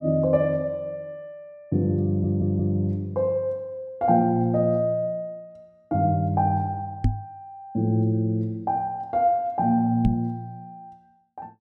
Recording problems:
audio stuttering; at 2 s
microphone thump; at 7 s and at 10 s; peak +5 dB vs average level

